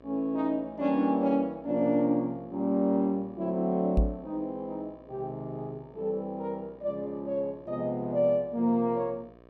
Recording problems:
hum; 60 Hz, harmonics up to 1.9 kHz, SNR 25 dB
knock on the microphone; at 4 s; peak +7 dB vs average level

